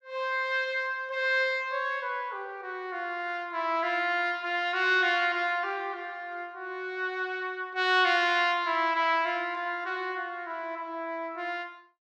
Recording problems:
none

